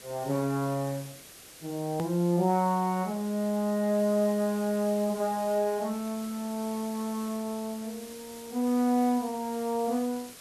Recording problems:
hiss; SNR 16 dB
edit click; at 2 s

